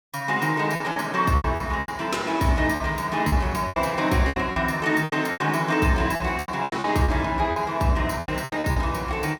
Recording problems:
packet loss; 14% of the sound replaced, filled with repeated pitch periods

